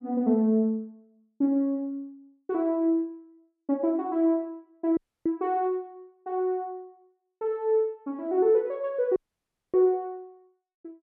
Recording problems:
audio cutting out; at 5 s and at 9 s for 0.5 s

